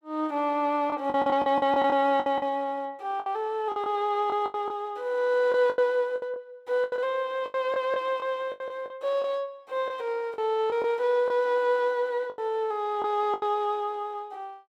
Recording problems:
lost packets; 10% of the sound replaced, filled with the last packet

